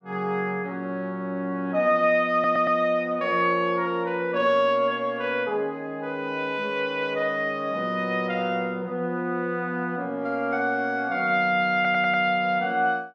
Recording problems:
audio stuttering; at 2.5 s and at 12 s

